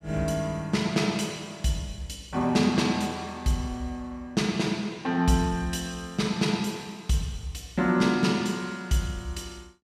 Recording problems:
none

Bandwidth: 14.5 kHz